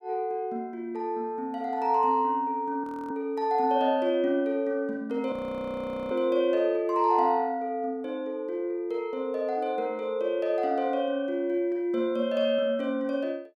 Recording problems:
audio freezing; at 3 s and at 5.5 s for 1 s

